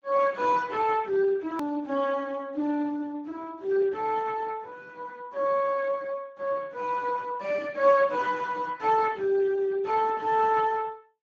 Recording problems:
lossy codec; Speex, log-spectral distance 3 dB
hard cut with a click; at 1.5 s

